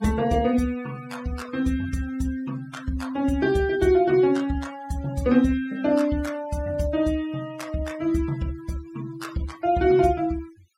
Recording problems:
denoising artefacts; signal-to-artefact ratio 21 dB

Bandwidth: 16.5 kHz